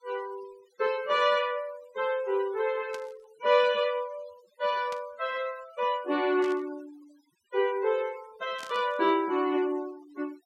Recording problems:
denoising artefacts; signal-to-artefact ratio 23 dB
burst of static; 4 times, first at 3 s; peak -10 dB vs average level

